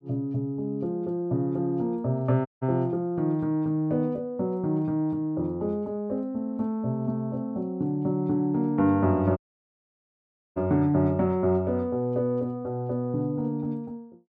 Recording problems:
audio cutting out; at 2.5 s and at 9.5 s for 1 s

